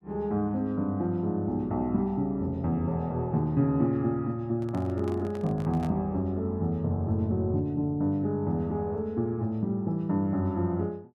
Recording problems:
handling noise; from 4.5 to 6 s; peak -9 dB vs average level

